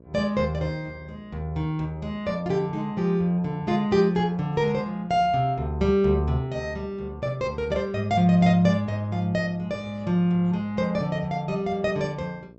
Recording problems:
low-pass filter; nothing above 7.7 kHz
hum; 60 Hz, harmonics up to 1.1 kHz, SNR 26 dB

